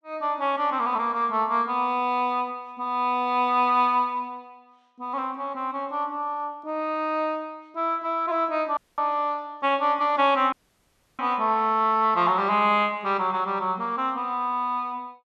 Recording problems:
audio cutting out; at 9 s and at 11 s for 0.5 s

